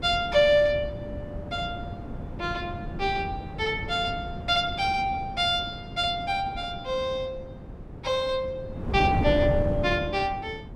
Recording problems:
wind noise; below 280 Hz, SNR 9 dB

